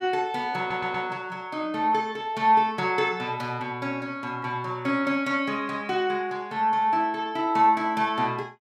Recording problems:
stutter; at 0.5 s

